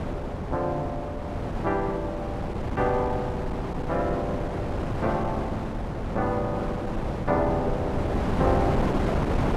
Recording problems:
wind on the microphone; below 570 Hz, SNR 0 dB

